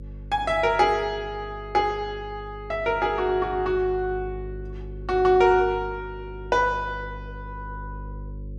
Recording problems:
mains hum; 50 Hz, harmonics up to 550 Hz, SNR 15 dB

